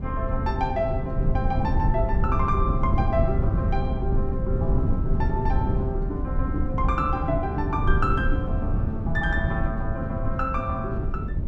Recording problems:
low-frequency rumble; below 130 Hz, SNR -2 dB

